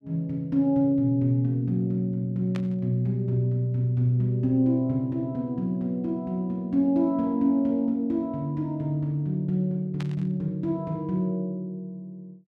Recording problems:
burst of static; at 2.5 s and at 10 s; peak -10 dB vs average level

